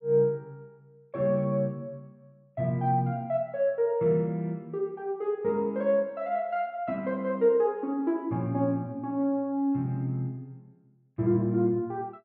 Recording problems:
none

